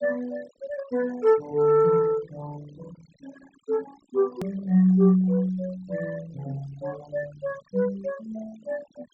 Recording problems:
treble cut off; nothing above 8 kHz
noise reduction artefacts; signal-to-artefact ratio 22 dB
click at an edit; at 4.5 s

